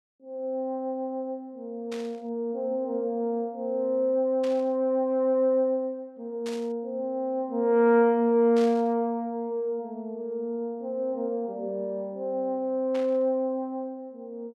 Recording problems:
burst of static; 5 times, first at 2 s; peak -10 dB vs average level

